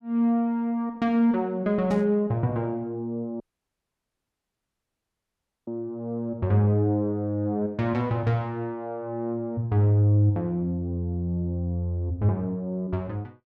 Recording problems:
static burst; at 2 s; peak -15 dB vs average level
audio cutting out; at 3.5 s for 2.5 s

